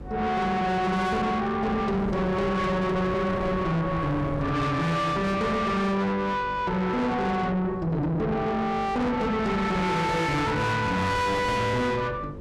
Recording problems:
distorted audio; soft clipping, signal-to-distortion ratio 7 dB
hum; 50 Hz, harmonics up to 650 Hz, SNR 17 dB
wind on the microphone; below 750 Hz, SNR 13 dB

